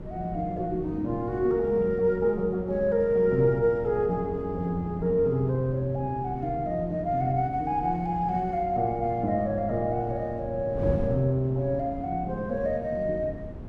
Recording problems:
wind on the microphone; below 260 Hz, SNR 12 dB

